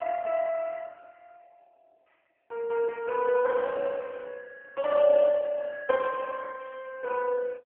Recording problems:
telephone audio; 170 Hz to 2.8 kHz, AMR-NB

